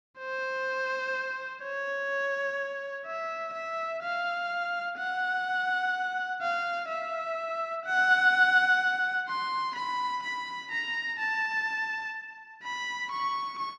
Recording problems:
none

